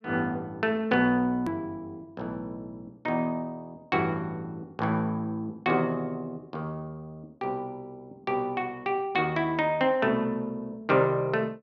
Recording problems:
click at an edit; at 1.5 s

